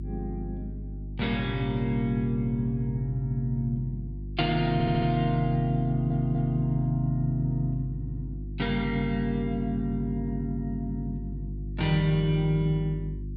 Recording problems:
electrical hum; 50 Hz, harmonics up to 350 Hz, SNR 9 dB
audio stuttering; at 4.5 s, at 6 s and at 8 s

